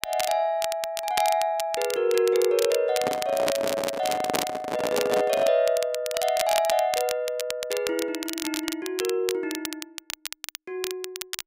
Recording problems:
crackle; vinyl, SNR 8 dB
handling noise; from 3 to 5.5 s; peak +3 dB vs average level

